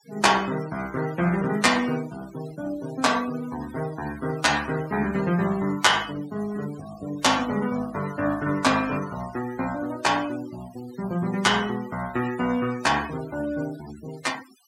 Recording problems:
noise reduction artefacts; signal-to-artefact ratio 17 dB

